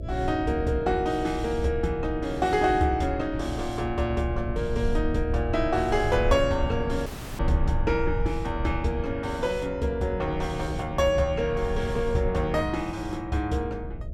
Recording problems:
electrical hum; 60 Hz, harmonics up to 660 Hz, SNR 13 dB
low-frequency rumble; below 90 Hz, SNR 8 dB
audio cutting out; at 7 s

